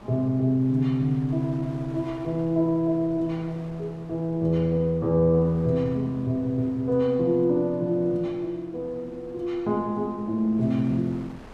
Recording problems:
wind on the microphone; below 1 kHz, SNR 23 dB

